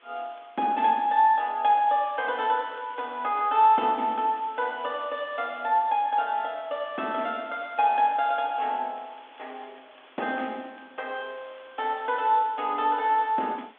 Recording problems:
telephone audio; 220 Hz to 3.5 kHz, G.726
hiss; SNR 27 dB

